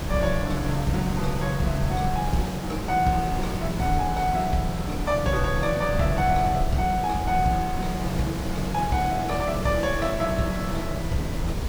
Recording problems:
hiss; slope -5 dB per octave, SNR 8 dB
low-frequency rumble; below 96 Hz, SNR 8 dB

